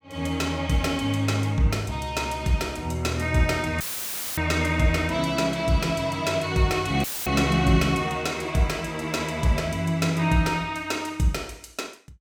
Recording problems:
dropout; at 4 s for 0.5 s and at 7 s; filled with static

